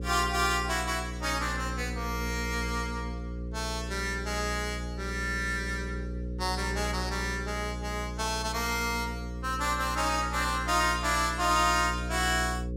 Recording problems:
electrical hum; 60 Hz, harmonics up to 540 Hz, SNR 7 dB

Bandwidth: 16 kHz